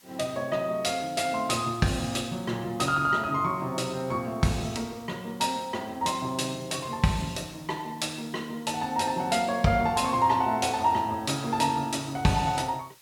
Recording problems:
background hiss; slope +1 dB per octave, SNR 26 dB

